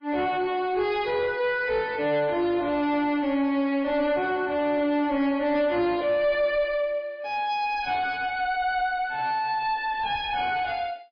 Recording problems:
lossy compression; MP3, log-spectral distance 2 dB, nothing above 5 kHz
distorted audio; soft clipping, signal-to-distortion ratio 10 dB

